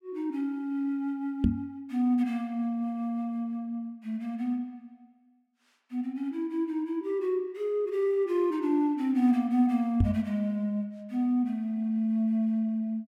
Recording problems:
knock on the microphone; at 1.5 s and at 10 s; peak +8 dB vs average level

